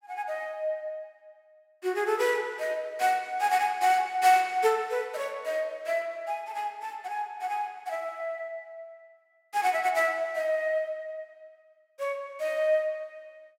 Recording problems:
none

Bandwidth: 16.5 kHz